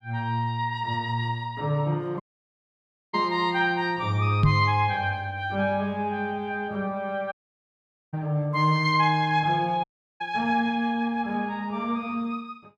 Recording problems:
audio cutting out; at 2 s for 1 s, at 7.5 s for 1 s and at 10 s
knock on the microphone; at 4.5 s; peak +8 dB vs average level

